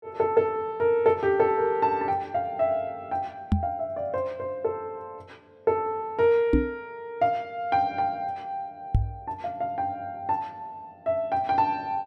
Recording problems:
knock on the microphone; at 3.5 s, at 6.5 s and at 9 s; peak +8 dB vs average level

